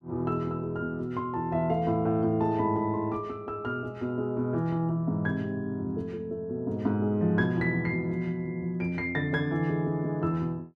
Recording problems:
none

